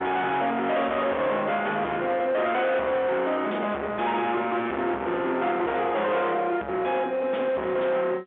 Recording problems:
phone line; 280 Hz to 3.6 kHz, G.711
distortion; soft clipping, signal-to-distortion ratio 6 dB

